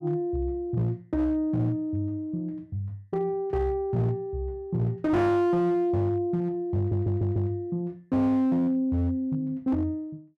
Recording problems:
distorted audio; hard clipping, signal-to-distortion ratio 12 dB
audio stuttering; at 7 s

